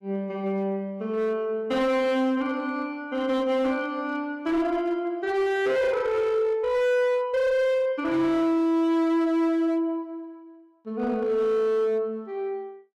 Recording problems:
distorted audio; hard clipping, signal-to-distortion ratio 10 dB

